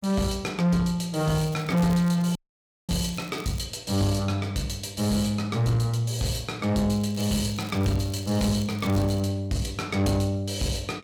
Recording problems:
distorted audio; soft clipping, signal-to-distortion ratio 11 dB
crackle; from 1.5 to 3.5 s and from 7 to 9 s; loose cable, SNR 21 dB
dropout; at 2.5 s for 0.5 s

